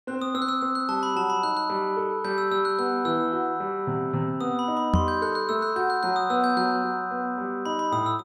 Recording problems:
knock on the microphone; at 5 s; peak +7 dB vs average level

